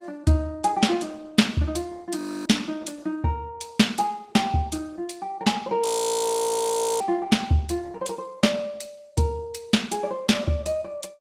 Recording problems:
codec artefacts; Opus, log-spectral distance 3 dB
frozen audio; at 2 s and at 6 s for 1 s

